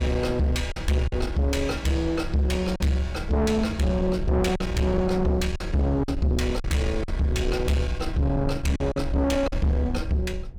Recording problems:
distortion; soft clipping, signal-to-distortion ratio 8 dB
low-frequency rumble; below 92 Hz, SNR 9 dB
lost packets; 4% of the sound replaced, filled with silence

